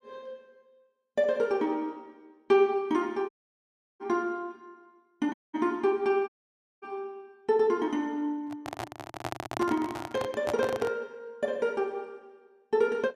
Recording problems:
audio cutting out; at 3.5 s for 0.5 s, at 5.5 s and at 6.5 s for 0.5 s
microphone handling noise; from 8.5 to 11 s; peak 0 dB vs average level

